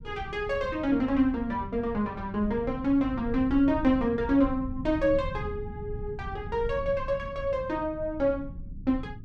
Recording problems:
low-frequency rumble; below 130 Hz, SNR 12 dB

